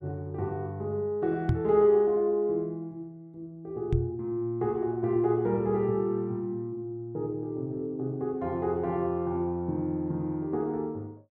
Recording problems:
knock on the microphone; at 1.5 s and at 4 s; peak +6 dB vs average level

